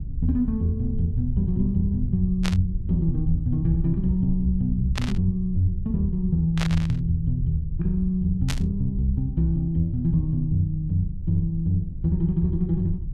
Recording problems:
low-frequency rumble; below 78 Hz, SNR 8 dB
static burst; 4 times, first at 2.5 s; peak -1 dB vs average level

